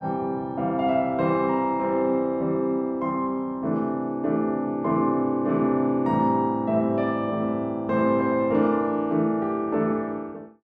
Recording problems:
none

